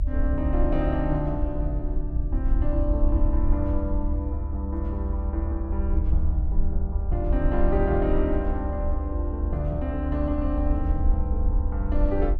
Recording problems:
low-frequency rumble; below 72 Hz, SNR -2 dB

